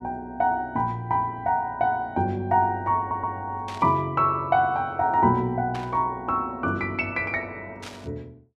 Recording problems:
stutter; at 3 s
burst of static; at 3.5 s, at 5.5 s and at 8 s; peak -10 dB vs average level

